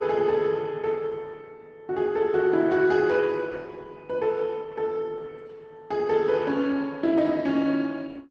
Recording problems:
codec artefacts; Opus, log-spectral distance 3 dB

